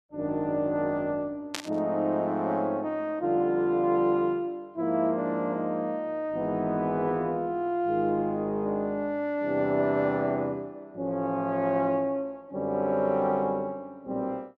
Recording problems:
burst of static; at 1.5 s; peak 0 dB vs average level

